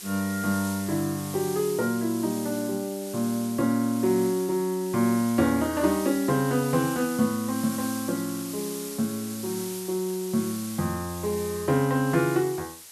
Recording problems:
hiss; slope +1 dB per octave, SNR 11 dB

